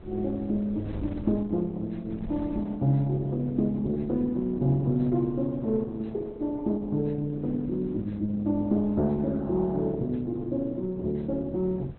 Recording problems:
codec artefacts; Opus, log-spectral distance 2 dB, nothing above 4 kHz
wind noise; below 160 Hz, SNR 19 dB

